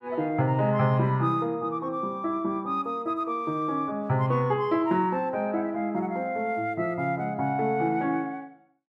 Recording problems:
none

